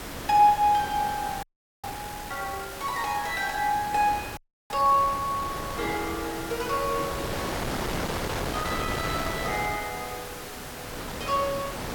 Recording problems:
background hiss; slope -1 dB per octave, SNR 13 dB
wind on the microphone; below 1.6 kHz, SNR 8 dB
audio freezing; at 1.5 s and at 4.5 s

